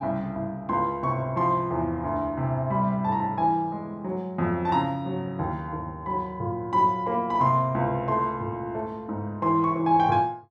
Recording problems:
none

